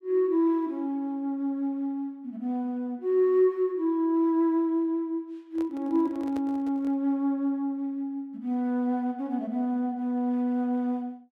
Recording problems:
microphone handling noise; from 5.5 to 7 s; peak -9 dB vs average level

